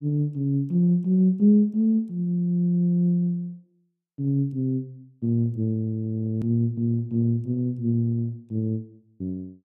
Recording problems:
click at an edit; at 6.5 s

